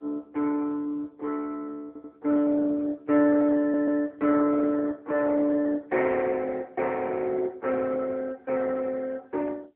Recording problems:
phone line; 260 Hz to 2.2 kHz, AMR-NB
stutter; at 2 s and at 3.5 s

